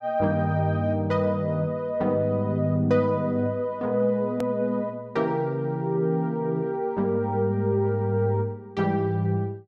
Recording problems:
edit click; at 4.5 s

